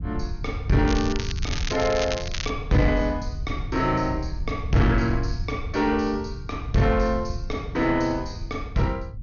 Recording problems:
treble missing; nothing above 6.7 kHz
distortion; soft clipping, signal-to-distortion ratio 11 dB
low-frequency rumble; below 110 Hz, SNR 8 dB
crackling; from 1 to 2.5 s; loose cable, SNR 8 dB

